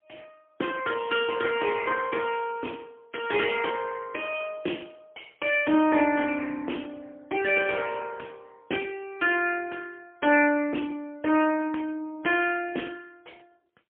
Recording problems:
phone line; 260 Hz to 3.3 kHz, AMR-NB, then MP3

